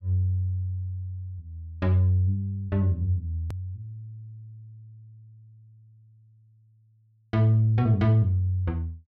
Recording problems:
hard cut with a click; at 3.5 s

